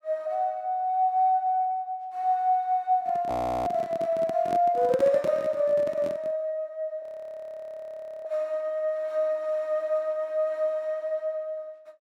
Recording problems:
microphone handling noise; from 3 to 6.5 s; peak -4 dB vs average level
audio freezing; at 3.5 s and at 7 s for 1 s

